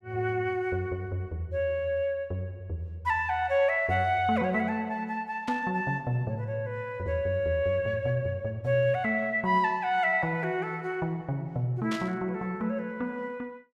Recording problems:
static burst; at 5.5 s and at 12 s; peak -5 dB vs average level

